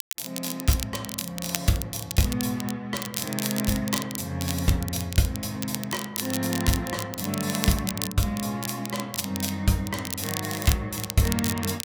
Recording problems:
crackle; vinyl, SNR 5 dB

